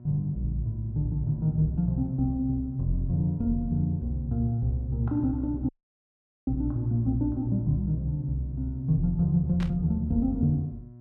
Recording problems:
hum; 60 Hz, harmonics up to 720 Hz, SNR 17 dB
dropout; at 5.5 s for 1 s
burst of static; at 9.5 s; peak -10 dB vs average level

